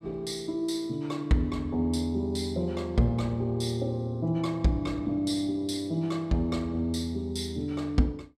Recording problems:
none

